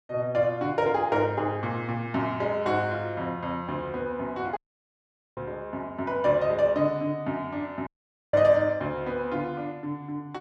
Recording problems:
audio cutting out; at 4.5 s for 1 s and at 8 s

